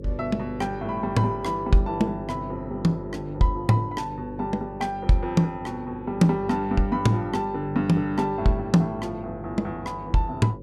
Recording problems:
hum; 50 Hz, harmonics up to 550 Hz, SNR 13 dB

